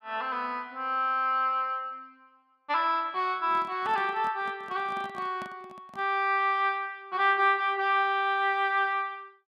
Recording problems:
handling noise; from 3.5 to 6 s; peak -12 dB vs average level

